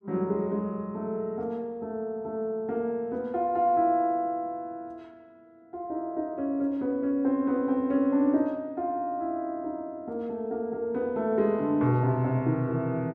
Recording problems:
none

